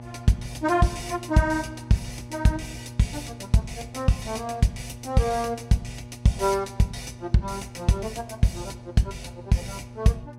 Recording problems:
hum; 60 Hz, harmonics up to 1.2 kHz, SNR 16 dB

